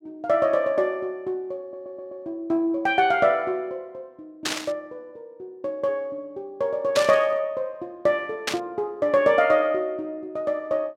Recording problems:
stutter; at 1.5 s
static burst; at 4.5 s, at 7 s and at 8.5 s; peak +3 dB vs average level

